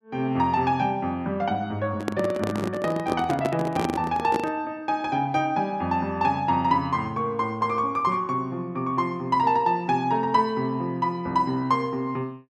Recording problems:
handling noise; from 2 to 4.5 s; peak +3 dB vs average level

